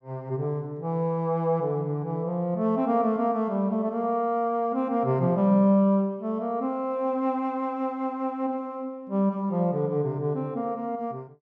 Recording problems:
none

